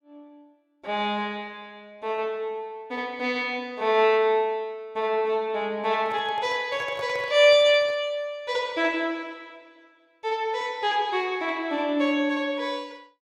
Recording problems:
microphone handling noise; from 6 to 8 s; peak -11 dB vs average level

